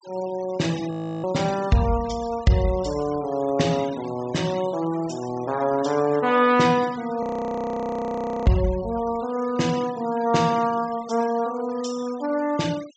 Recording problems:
treble missing; nothing above 8 kHz
denoising artefacts; signal-to-artefact ratio 18 dB
frozen audio; at 1 s and at 7 s for 1 s

